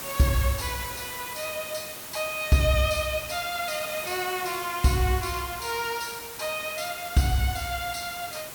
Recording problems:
hiss; slope -2 dB per octave, SNR 9 dB

